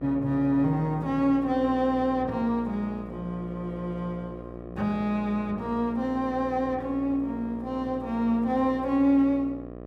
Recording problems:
hum; 60 Hz, harmonics up to 1.3 kHz, SNR 13 dB

